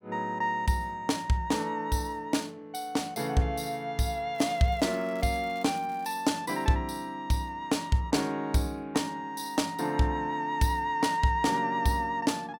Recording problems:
crackling; from 4.5 to 6 s; loose cable, SNR 26 dB

